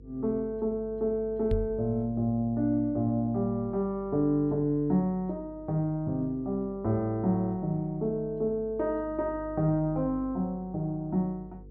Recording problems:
electrical hum; 50 Hz, harmonics up to 500 Hz, SNR 19 dB
microphone bump; at 1.5 s; peak +2 dB vs average level

